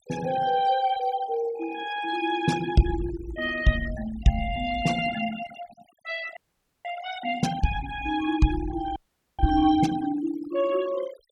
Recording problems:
noise reduction artefacts; signal-to-artefact ratio 14 dB
frozen audio; at 6.5 s and at 9 s

